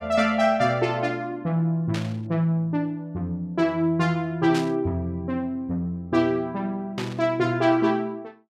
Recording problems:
burst of static; at 2 s, at 4.5 s and at 7 s; peak -4 dB vs average level

